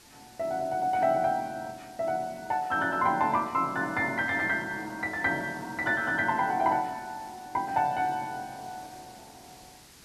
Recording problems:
hiss; SNR 23 dB

